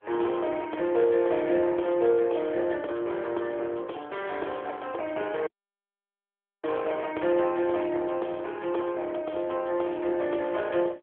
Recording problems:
telephone audio; 300 Hz to 3.4 kHz, AMR-NB
dropout; at 5.5 s for 1 s

